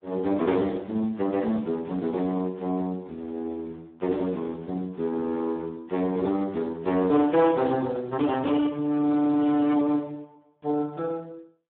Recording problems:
telephone audio; 220 Hz to 2.3 kHz, Speex
distorted audio; hard clipping, signal-to-distortion ratio 15 dB

